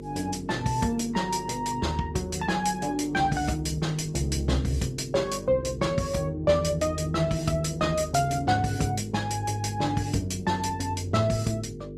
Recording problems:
lossy codec; Opus, log-spectral distance 3 dB, nothing above 14.3 kHz
electrical hum; 50 Hz, harmonics up to 450 Hz, SNR 13 dB

